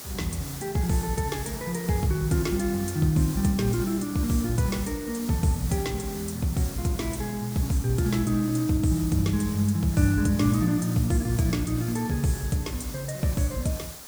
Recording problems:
background hiss; SNR 13 dB

